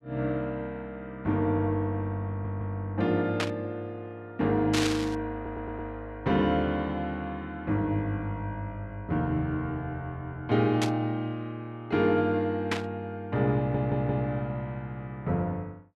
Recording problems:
audio stuttering; at 2.5 s, at 5.5 s and at 14 s
burst of static; 4 times, first at 3.5 s; peak +4 dB vs average level

